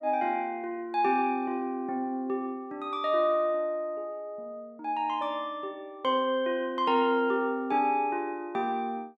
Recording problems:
none

